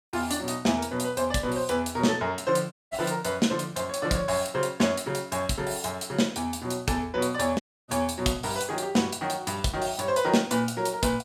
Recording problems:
audio cutting out; at 2.5 s and at 7.5 s

